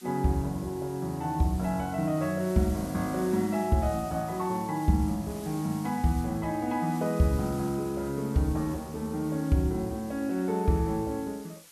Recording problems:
hiss; slope +1 dB per octave, SNR 19 dB

